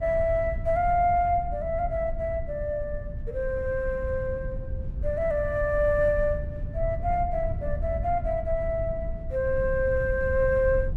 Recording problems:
rumble; below 90 Hz, SNR 8 dB

